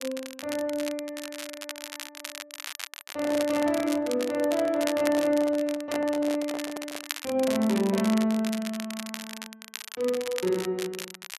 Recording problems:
crackling; vinyl, SNR 11 dB
microphone handling noise; from 3 to 7 s; peak -3 dB vs average level

